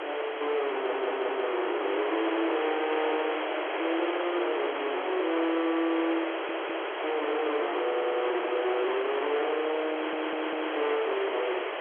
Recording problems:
telephone audio; 930 Hz to 3.1 kHz, G.711
distortion; soft clipping, signal-to-distortion ratio 8 dB
hiss; SNR 2 dB
stutter; 4 times, first at 1 s
handling noise; from 3 to 5.5 s; peak -8 dB vs average level

